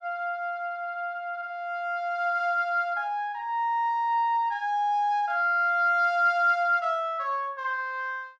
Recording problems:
none

